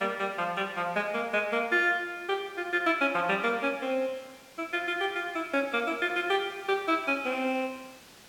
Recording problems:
hiss; slope -2 dB per octave, SNR 24 dB

